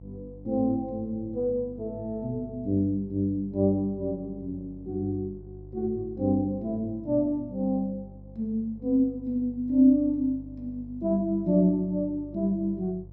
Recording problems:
hum; 50 Hz, harmonics up to 500 Hz, SNR 19 dB

